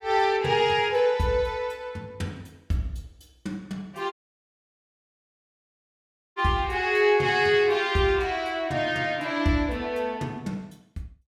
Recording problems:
dropout; at 4 s for 2 s

